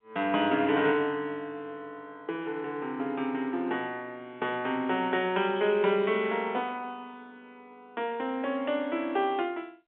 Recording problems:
telephone audio; 220 Hz to 3.6 kHz, G.711

